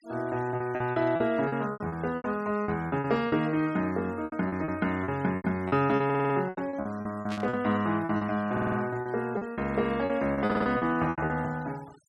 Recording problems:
noise reduction artefacts; signal-to-artefact ratio 23 dB
lost packets; 15% of the sound replaced, filled with repeated pitch periods
audio stuttering; at 6 s, at 8.5 s and at 10 s
static burst; at 7.5 s; peak -7 dB vs average level

